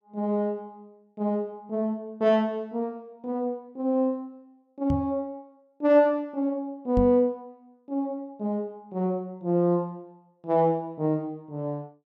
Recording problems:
microphone thump; at 5 s and at 7 s; peak +3 dB vs average level

